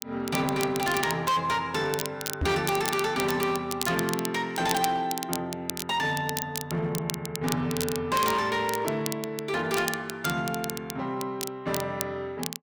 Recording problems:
distortion; hard clipping, uneven, signal-to-distortion ratio 11 dB
crackle; vinyl, SNR 7 dB
microphone bump; at 2.5 s; peak +3 dB vs average level

